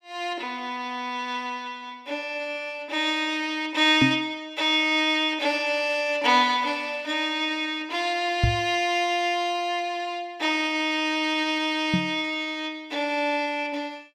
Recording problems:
microphone thump; at 4 s, at 8.5 s and at 12 s; peak +6 dB vs average level

